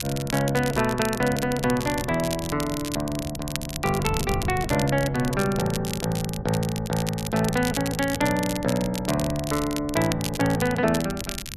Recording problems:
wind on the microphone; below 170 Hz, SNR 14 dB
crackling; vinyl, SNR 9 dB

